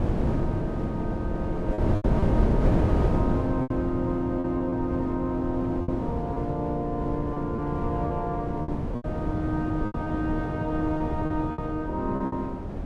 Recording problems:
wind noise; below 310 Hz, SNR 0 dB
packet loss; 7% of the sound replaced, filled with repeated pitch periods

